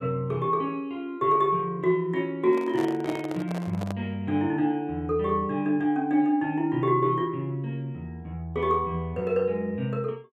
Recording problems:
handling noise; from 2.5 to 4 s; peak -5 dB vs average level

